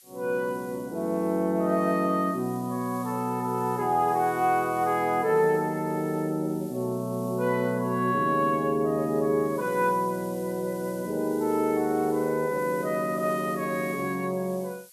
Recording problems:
hiss; slope +5 dB per octave, SNR 22 dB

